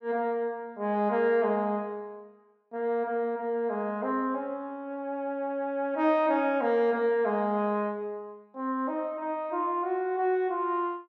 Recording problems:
none

